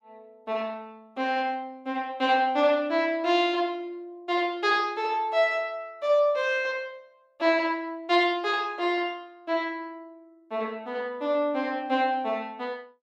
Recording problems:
none

